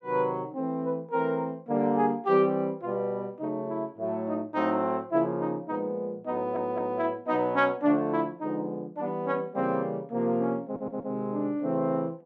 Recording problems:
audio stuttering; at 6.5 s and at 11 s

